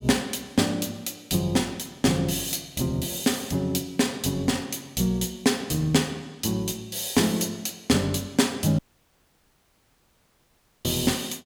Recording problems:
dropout; at 9 s for 2 s

